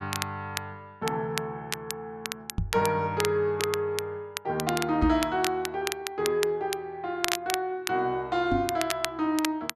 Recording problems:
crackle; vinyl, SNR 6 dB
microphone bump; at 2.5 s, at 5 s and at 8.5 s; peak +5 dB vs average level

